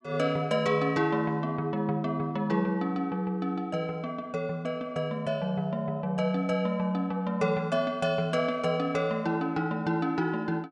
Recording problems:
none

